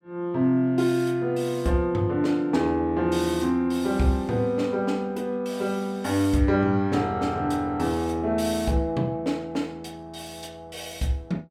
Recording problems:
none

